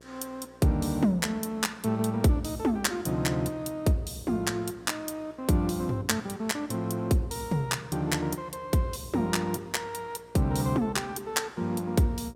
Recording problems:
hum; 60 Hz, harmonics up to 1.1 kHz, SNR 28 dB

